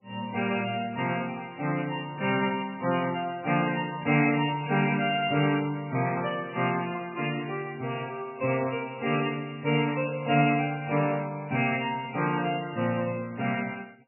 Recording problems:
lossy codec; MP3, log-spectral distance 5 dB, nothing above 2.4 kHz

